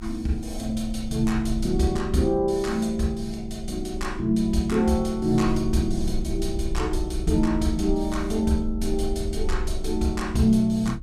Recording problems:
low-frequency rumble; below 60 Hz, strongest tone 22 Hz, SNR 9 dB

